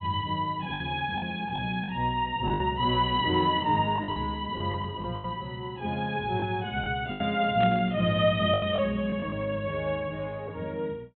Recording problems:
low-pass filter; nothing above 3.9 kHz
lost packets; 7% of the sound replaced, filled with the last packet
burst of static; at 7.5 s; peak -5 dB vs average level

